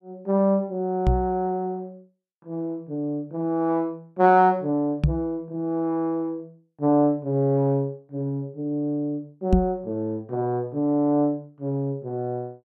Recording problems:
microphone thump; at 1 s, at 5 s and at 9.5 s; peak +8 dB vs average level

